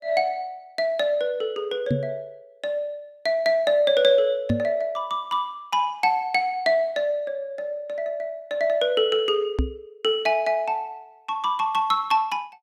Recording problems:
microphone thump; at 2 s, at 4.5 s and at 9.5 s; peak +4 dB vs average level

